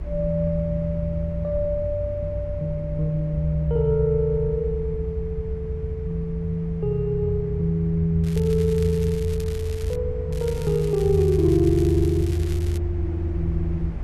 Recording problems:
low-frequency rumble; below 74 Hz, SNR 10 dB
crackle; from 8 to 10 s and from 10 to 13 s; loose cable, SNR 19 dB

